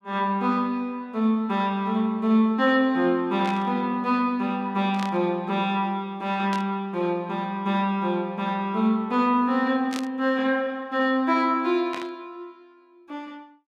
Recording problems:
burst of static; 5 times, first at 3.5 s; peak -7 dB vs average level

